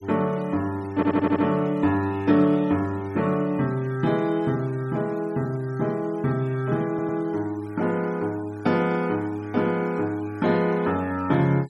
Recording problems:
denoising artefacts; signal-to-artefact ratio 26 dB
stutter; at 1 s and at 7 s

